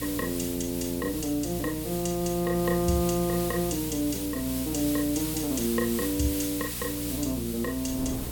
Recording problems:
electrical hum; 60 Hz, harmonics up to 720 Hz, SNR 10 dB
hiss; slope +1 dB per octave, SNR 6 dB
wind noise; below 370 Hz, SNR 19 dB

